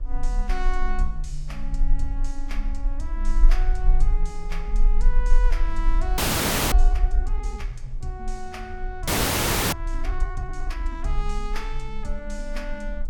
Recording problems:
low-frequency rumble; below 36 Hz, strongest tone 20 Hz, SNR -7 dB
wind on the microphone; below 190 Hz, SNR 17 dB
audio freezing; at 6 s for 0.5 s and at 9 s for 0.5 s

